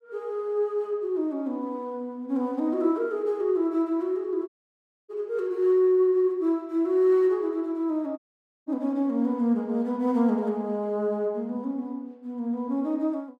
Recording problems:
dropout; at 4.5 s for 0.5 s and at 8 s

